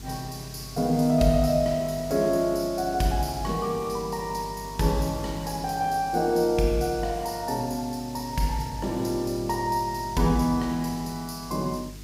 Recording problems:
hum; 50 Hz, harmonics up to 450 Hz, SNR 19 dB
hiss; slope +2 dB per octave, SNR 19 dB

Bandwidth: 15.5 kHz